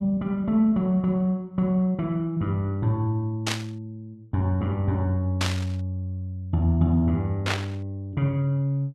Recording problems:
static burst; at 3.5 s, at 5.5 s and at 7.5 s; peak +3 dB vs average level

